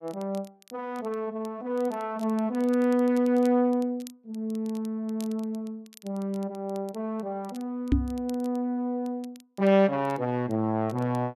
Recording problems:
crackling; vinyl, SNR 26 dB
microphone thump; at 8 s; peak +8 dB vs average level

